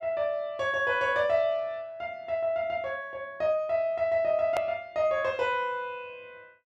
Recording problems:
click at an edit; at 4.5 s

